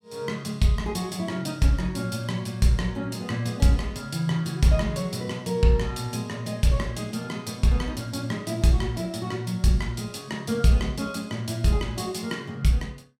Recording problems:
none

